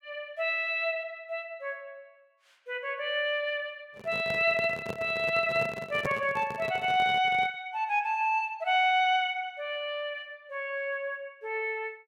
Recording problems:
handling noise; from 4 to 7.5 s; peak -1 dB vs average level

